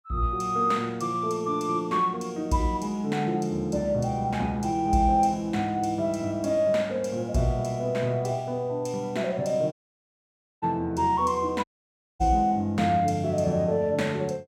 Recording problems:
audio cutting out; at 9.5 s for 1 s and at 12 s for 0.5 s

